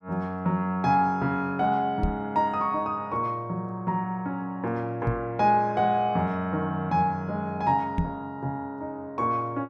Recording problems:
microphone bump; at 2 s, at 5 s and at 8 s; peak +4 dB vs average level

